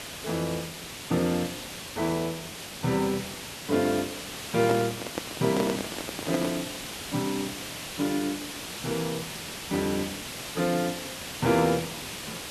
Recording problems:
background hiss; slope -1 dB per octave, SNR 7 dB
microphone handling noise; from 4.5 to 6.5 s; peak +2 dB vs average level

